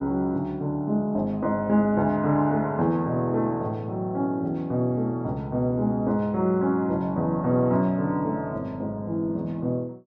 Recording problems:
none

